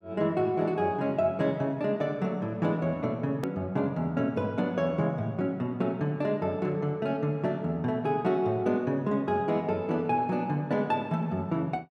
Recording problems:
click at an edit; at 3.5 s

